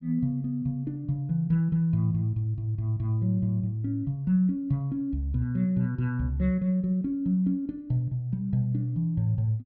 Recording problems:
none

